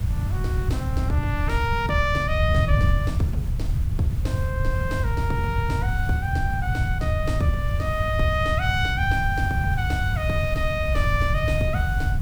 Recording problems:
hiss; slope -3 dB per octave, SNR 18 dB
wind noise; below 110 Hz, SNR -1 dB

